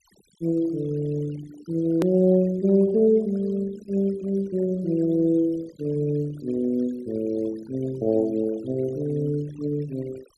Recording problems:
noise reduction artefacts; signal-to-artefact ratio 22 dB
hard cut with a click; at 2 s

